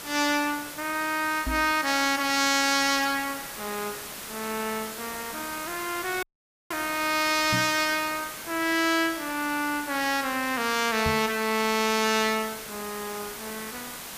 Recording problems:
background hiss; slope -1 dB per octave, SNR 11 dB
knock on the microphone; at 1.5 s, at 7.5 s and at 11 s; peak -1 dB vs average level
audio cutting out; at 6 s

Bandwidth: 15 kHz